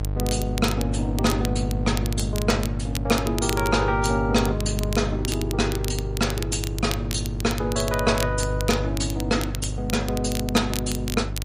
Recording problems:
lossy compression; MP3, log-spectral distance 2 dB, nothing above 10.4 kHz
mains hum; 50 Hz, harmonics up to 750 Hz, SNR 4 dB
crackle; vinyl, SNR 10 dB

